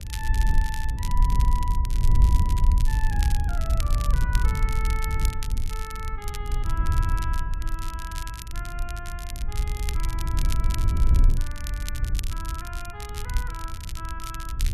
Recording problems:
wind on the microphone; below 68 Hz, SNR -10 dB
crackling; vinyl, SNR 4 dB

